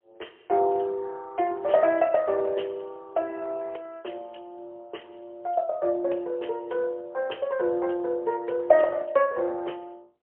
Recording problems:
telephone audio; 320 Hz to 3.2 kHz, AMR-NB, then MP3

